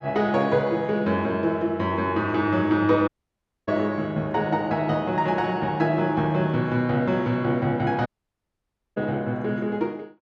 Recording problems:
dropout; at 3 s for 0.5 s and at 8 s for 1 s

